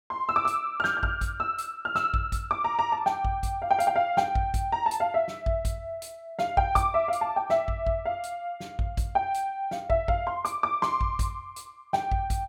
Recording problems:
none

